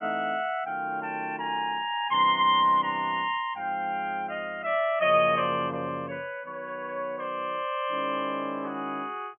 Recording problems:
treble cut off; nothing above 3.3 kHz

